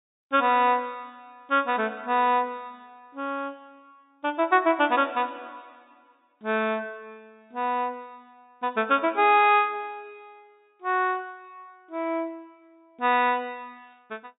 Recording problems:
low-pass filter; nothing above 4 kHz

